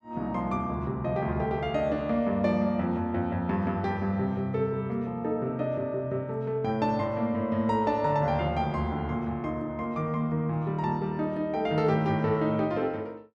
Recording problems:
none

